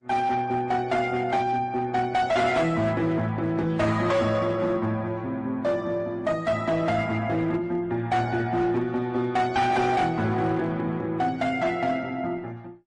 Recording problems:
lossy compression; Opus, then MP3, log-spectral distance 2 dB, nothing above 9.5 kHz
distorted audio; hard clipping, signal-to-distortion ratio 12 dB

